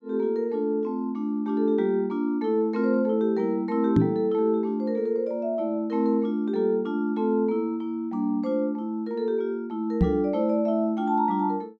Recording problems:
knock on the microphone; at 4 s and at 10 s; peak +8 dB vs average level

